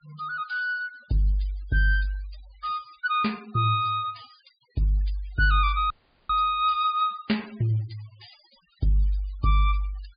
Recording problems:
treble cut off; nothing above 4.8 kHz
denoising artefacts; signal-to-artefact ratio 26 dB
audio cutting out; at 6 s

